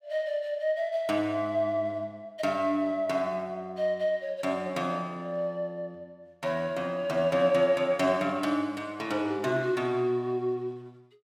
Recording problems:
none

